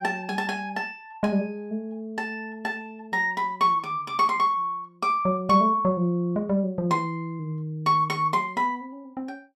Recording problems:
none

